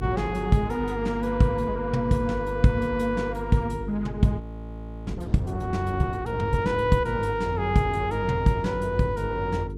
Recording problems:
mains hum; 50 Hz, harmonics up to 450 Hz, SNR 10 dB
audio freezing; at 4.5 s for 0.5 s

